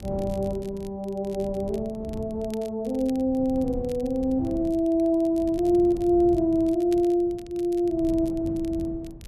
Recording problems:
wind on the microphone; below 220 Hz, SNR 15 dB
crackling; vinyl, SNR 27 dB

